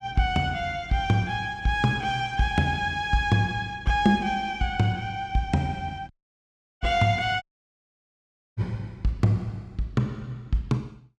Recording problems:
audio cutting out; at 6 s for 0.5 s and at 7.5 s for 1 s

